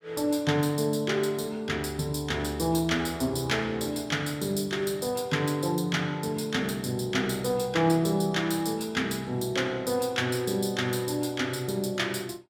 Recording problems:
none

